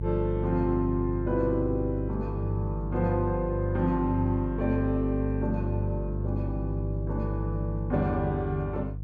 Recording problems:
hum; 50 Hz, harmonics up to 350 Hz, SNR 3 dB

